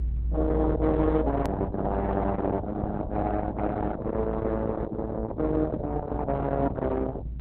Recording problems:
lossy compression; Opus, log-spectral distance 2 dB, nothing above 13.1 kHz
distortion; soft clipping, signal-to-distortion ratio 12 dB
hum; 50 Hz, harmonics up to 500 Hz, SNR 17 dB
low-frequency rumble; below 150 Hz, strongest tone 58 Hz, SNR 4 dB
edit click; at 1.5 s

